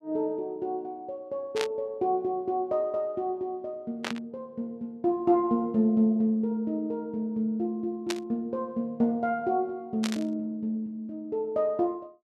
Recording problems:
burst of static; 4 times, first at 1.5 s; peak +1 dB vs average level

